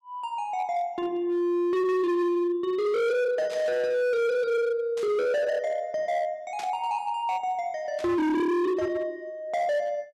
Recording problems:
distorted audio; hard clipping, signal-to-distortion ratio 7 dB
burst of static; 4 times, first at 3.5 s; peak -10 dB vs average level

